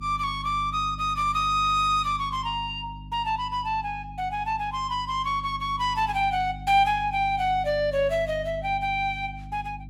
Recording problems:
hum; 50 Hz, harmonics up to 300 Hz, SNR 14 dB

